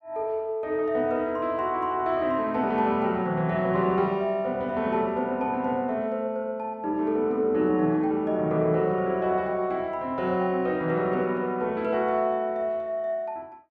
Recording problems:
none

